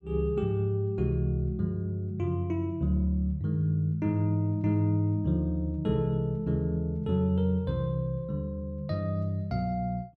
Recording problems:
none

